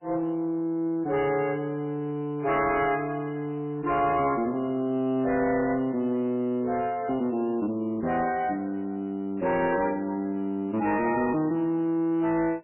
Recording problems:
lossy compression; MP3, log-spectral distance 2 dB, nothing above 2.9 kHz
distortion; soft clipping, signal-to-distortion ratio 11 dB

